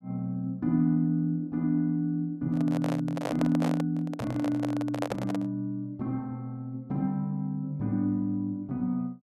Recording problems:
microphone handling noise; from 2.5 to 5.5 s; peak +1 dB vs average level

